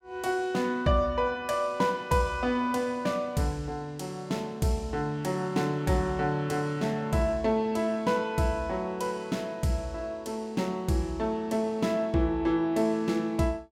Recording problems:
none

